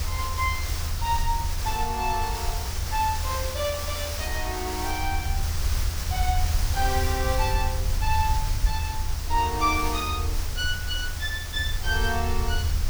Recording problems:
hiss; slope -1 dB per octave, SNR 5 dB
low-frequency rumble; below 80 Hz, strongest tone 78 Hz, SNR 5 dB
wind noise; below 72 Hz, SNR 3 dB

